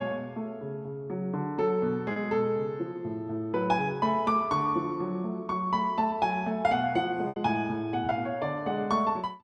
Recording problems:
packet loss; 1.5% of the sound replaced, filled with repeated pitch periods

